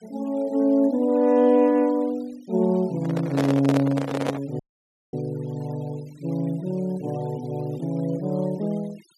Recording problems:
denoising artefacts; signal-to-artefact ratio 26 dB
handling noise; from 3 to 4.5 s; peak +2 dB vs average level
dropout; at 4.5 s for 0.5 s

